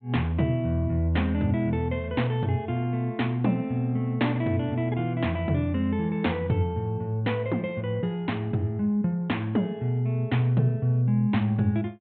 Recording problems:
treble missing; nothing above 4 kHz

